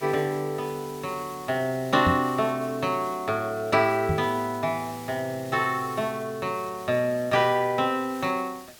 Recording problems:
background hiss; SNR 19 dB
knock on the microphone; at 2 s and at 4 s; peak +3 dB vs average level

